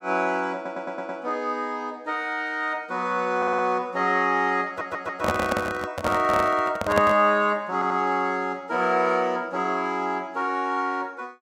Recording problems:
stutter; 4 times, first at 0.5 s
microphone handling noise; from 4.5 to 7 s; peak +4 dB vs average level

